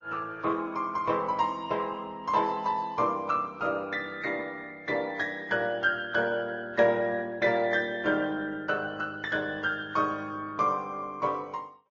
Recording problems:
lossy compression; Opus, then MP3, log-spectral distance 2 dB, nothing above 6.5 kHz

